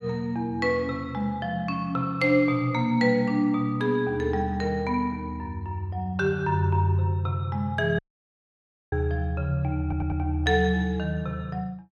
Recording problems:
dropout; at 8 s for 1 s
audio stuttering; at 10 s

